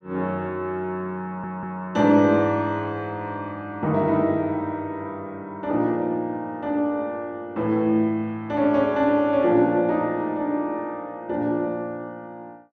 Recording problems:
audio stuttering; at 1.5 s

